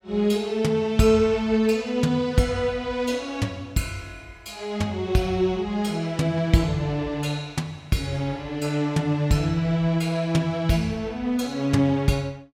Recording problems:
none

